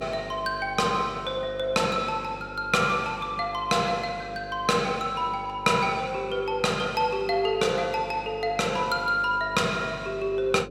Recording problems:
hum; 50 Hz, harmonics up to 550 Hz, SNR 17 dB

